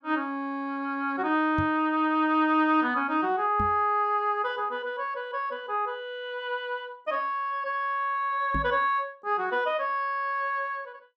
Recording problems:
knock on the microphone; at 1.5 s, at 3.5 s and at 8.5 s; peak -1 dB vs average level

